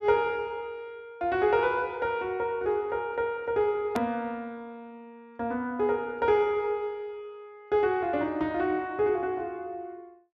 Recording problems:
treble cut off; nothing above 7.5 kHz
click at an edit; at 4 s

